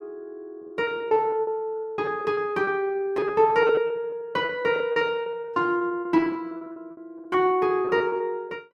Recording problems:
lost packets; 18% of the sound replaced, filled with repeated pitch periods

